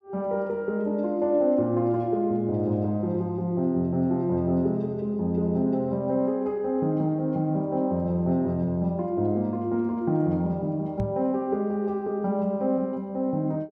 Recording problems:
microphone thump; at 11 s; peak -1 dB vs average level

